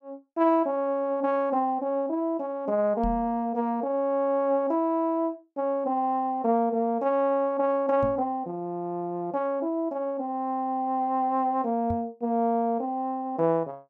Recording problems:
microphone bump; at 3 s, at 8 s and at 12 s; peak -3 dB vs average level

